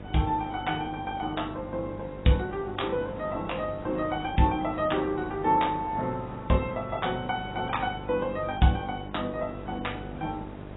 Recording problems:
lossy compression; AAC, log-spectral distance 4 dB, nothing above 3.7 kHz
hum; 50 Hz, harmonics up to 1.1 kHz, SNR 14 dB
background hiss; SNR 17 dB

